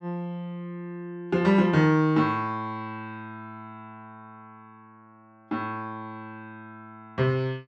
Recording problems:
none

